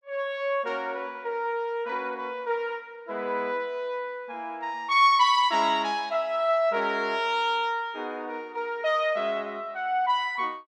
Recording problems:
none

